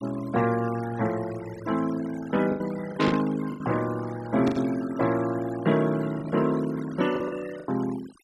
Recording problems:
denoising artefacts; signal-to-artefact ratio 16 dB
packet loss; 6% of the sound replaced, filled with the last packet
static burst; at 3 s and at 4.5 s; peak -1 dB vs average level

